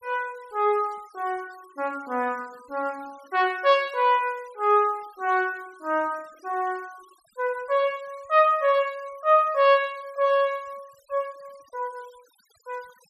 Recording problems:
noise reduction artefacts; signal-to-artefact ratio 28 dB

